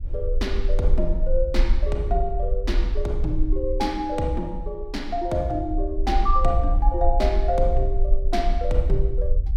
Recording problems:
low-frequency rumble; below 46 Hz, strongest tone 22 Hz, SNR 0 dB

